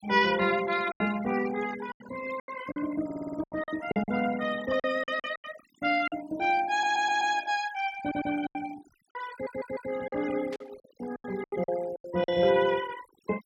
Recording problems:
denoising artefacts; signal-to-artefact ratio 15 dB
packet loss; 11% of the sound replaced, filled with silence
stutter; 4 times, first at 3 s
static burst; at 11 s; peak -10 dB vs average level

